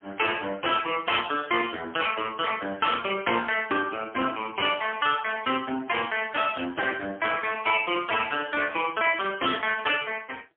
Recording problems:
phone line; 280 Hz to 3.4 kHz, AMR-NB, then MP3

